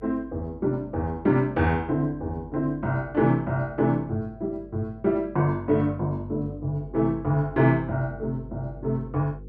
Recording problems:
hum; 50 Hz, harmonics up to 500 Hz, SNR 19 dB

